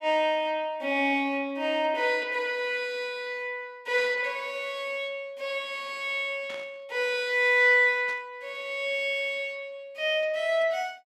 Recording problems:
burst of static; at 4 s, at 6.5 s and at 8 s; peak -12 dB vs average level

